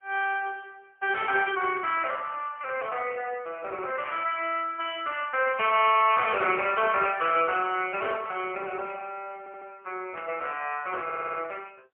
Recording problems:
phone line; 320 Hz to 3.1 kHz, AMR-NB, then MP3
static burst; 4 times, first at 2 s; peak -9 dB vs average level
stutter; at 9.5 s and at 11 s

